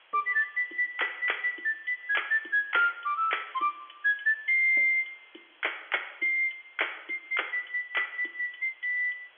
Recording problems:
phone line; 280 Hz to 3.4 kHz, G.711
hiss; SNR 29 dB

